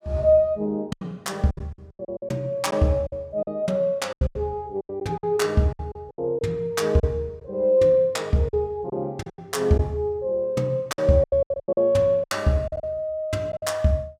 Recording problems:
lost packets; 12% of the sound replaced, filled with silence

